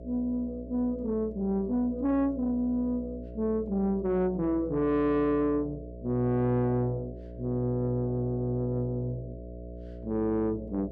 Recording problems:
distortion; soft clipping, signal-to-distortion ratio 11 dB
hum; 60 Hz, harmonics up to 660 Hz, SNR 13 dB

